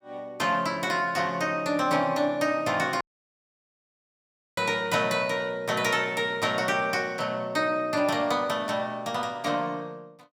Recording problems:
dropout; at 3 s for 1.5 s

